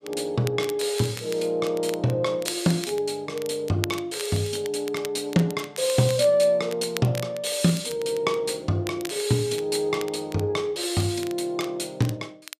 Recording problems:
crackle; vinyl, SNR 15 dB

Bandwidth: 14.5 kHz